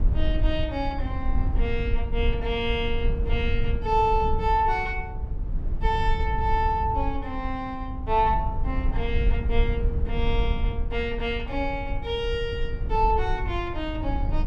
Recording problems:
low-frequency rumble; below 68 Hz, SNR 2 dB

